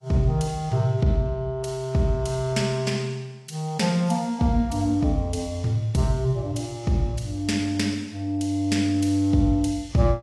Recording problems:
lossy codec; AAC, log-spectral distance 2 dB, nothing above 11.3 kHz

